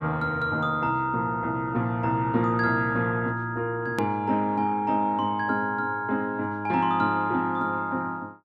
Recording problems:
hard cut with a click; at 4 s

